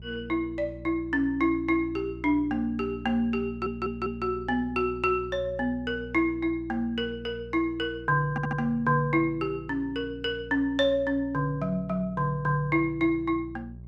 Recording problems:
electrical hum; 60 Hz, harmonics up to 420 Hz, SNR 17 dB
stutter; at 3.5 s and at 8.5 s

